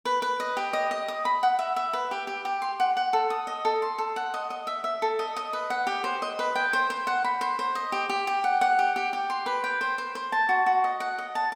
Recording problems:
none

